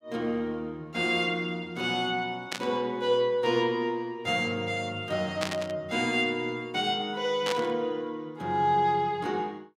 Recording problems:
static burst; at 2.5 s, at 5.5 s and at 7.5 s; peak +2 dB vs average level

